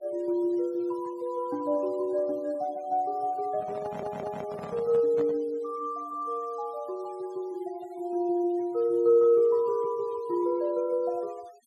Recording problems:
denoising artefacts; signal-to-artefact ratio 27 dB
handling noise; from 3.5 to 5.5 s; peak -8 dB vs average level
audio stuttering; at 4 s

